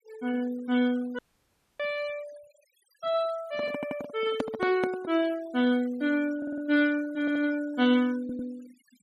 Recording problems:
denoising artefacts; signal-to-artefact ratio 21 dB
dropout; at 1 s for 0.5 s
microphone handling noise; from 3.5 to 5 s; peak +2 dB vs average level
stutter; 4 times, first at 4 s

